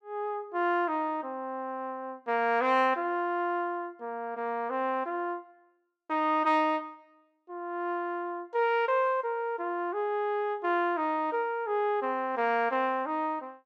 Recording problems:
none

